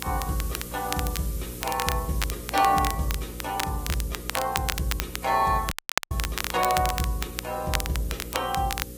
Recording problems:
lossy compression; AAC, log-spectral distance 9 dB
hum; 60 Hz, harmonics up to 540 Hz, SNR 15 dB
hiss; SNR 13 dB
crackle; vinyl, SNR 5 dB
audio cutting out; at 5.5 s

